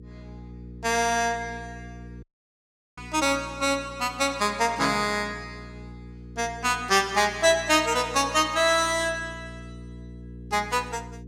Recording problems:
hum; 60 Hz, harmonics up to 480 Hz, SNR 18 dB
dropout; at 2 s for 0.5 s

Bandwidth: 16.5 kHz